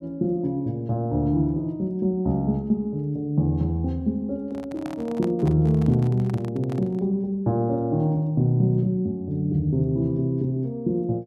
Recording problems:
microphone handling noise; from 4.5 to 7 s; peak -8 dB vs average level

